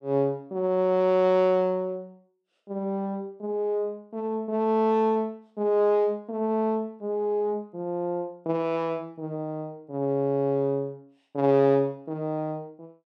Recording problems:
none

